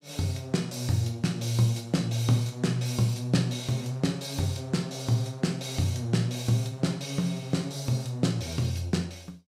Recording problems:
none

